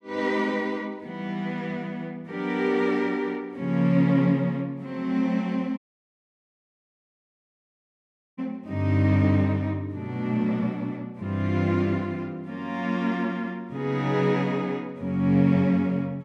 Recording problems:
dropout; at 6 s for 2.5 s

